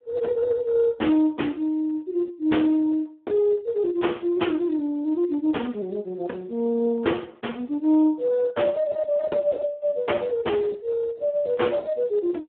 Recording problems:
phone line; 220 Hz to 3.3 kHz, Speex

